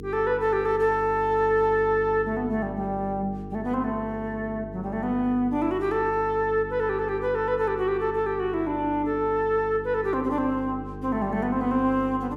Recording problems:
hum; 50 Hz, harmonics up to 450 Hz, SNR 13 dB

